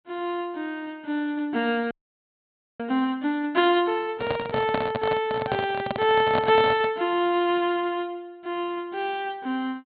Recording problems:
low-pass filter; nothing above 4.5 kHz
audio freezing; at 2 s for 1 s
microphone handling noise; from 4 to 7 s; peak +2 dB vs average level

